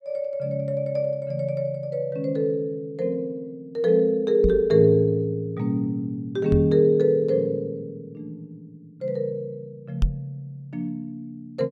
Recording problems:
microphone bump; at 4.5 s, at 6.5 s and at 10 s; peak +4 dB vs average level

